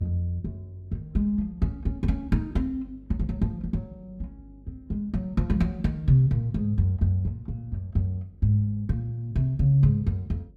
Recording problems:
electrical hum; 50 Hz, harmonics up to 550 Hz, SNR 27 dB

